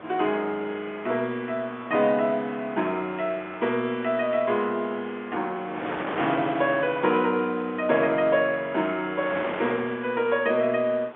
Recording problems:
phone line; 260 Hz to 3.6 kHz, G.711
wind noise; below 1.6 kHz, SNR 13 dB

